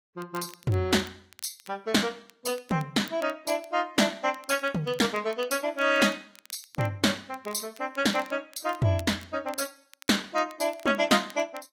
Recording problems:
lossy codec; AAC, log-spectral distance 4 dB, nothing above 15.1 kHz
crackle; vinyl, SNR 24 dB

